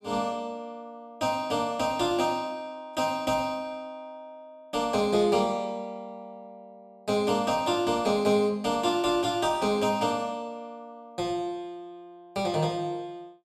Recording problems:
none

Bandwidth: 15 kHz